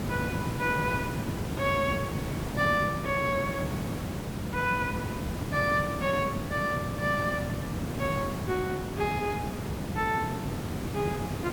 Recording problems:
background hiss; slope -6 dB per octave, SNR 3 dB

